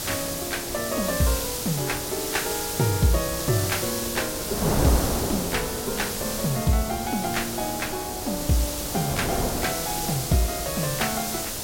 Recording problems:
background hiss; SNR 2 dB
wind on the microphone; below 700 Hz, SNR 6 dB

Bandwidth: 16.5 kHz